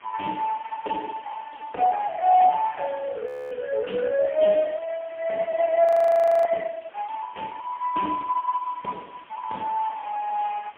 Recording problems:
telephone audio; 220 Hz to 3.3 kHz, AMR-NB, then MP3
hiss; SNR 27 dB
audio freezing; at 3.5 s and at 6 s for 0.5 s

